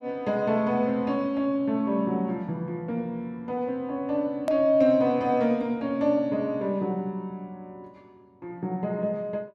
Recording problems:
hard cut with a click; at 4.5 s

